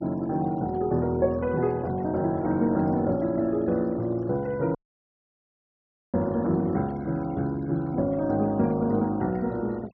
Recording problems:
treble missing; nothing above 5.7 kHz
denoising artefacts; signal-to-artefact ratio 26 dB
dropout; at 5 s for 1.5 s

